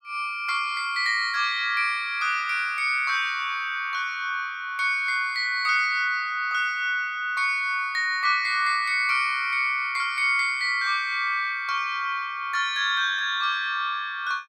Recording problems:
none

